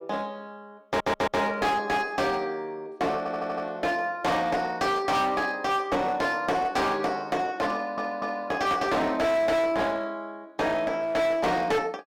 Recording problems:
distorted audio; hard clipping, uneven, signal-to-distortion ratio 7 dB
audio stuttering; at 1 s, at 3 s and at 7.5 s

